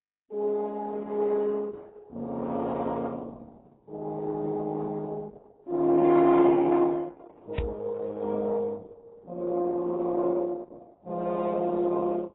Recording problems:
lossy codec; Opus, then AAC, log-spectral distance 3 dB, nothing above 3.8 kHz
microphone thump; at 7.5 s; peak +5 dB vs average level

